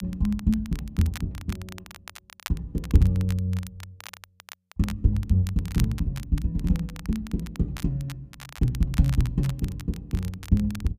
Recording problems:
crackling; vinyl, SNR 17 dB

